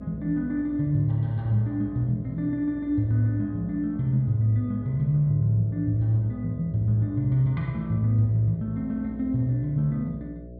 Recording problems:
mains hum; 60 Hz, harmonics up to 660 Hz, SNR 18 dB

